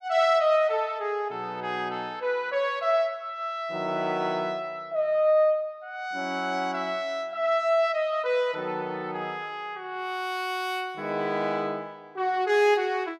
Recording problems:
none

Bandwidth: 16 kHz